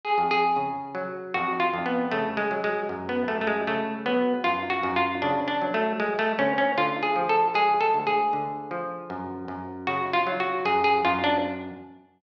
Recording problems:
none

